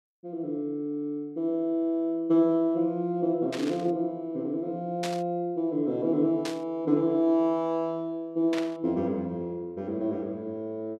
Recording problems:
static burst; 4 times, first at 3.5 s; peak -3 dB vs average level

